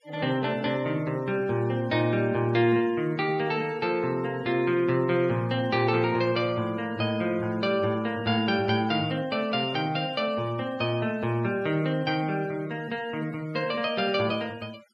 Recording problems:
denoising artefacts; signal-to-artefact ratio 23 dB

